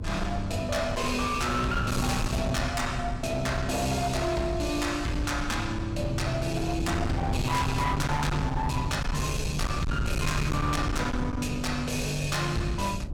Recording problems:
distorted audio; hard clipping, signal-to-distortion ratio 8 dB
hum; 50 Hz, harmonics up to 400 Hz, SNR 17 dB
wind noise; below 180 Hz, SNR 6 dB

